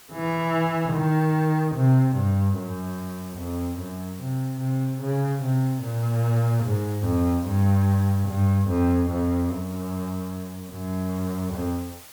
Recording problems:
hiss; slope 0 dB per octave, SNR 20 dB

